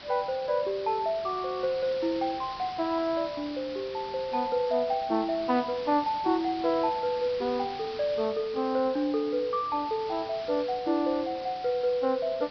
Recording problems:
low-pass filter; nothing above 5.5 kHz
hiss; slope -1 dB per octave, SNR 15 dB

